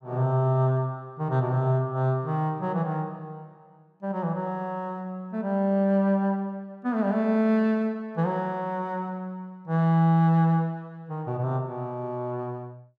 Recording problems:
none

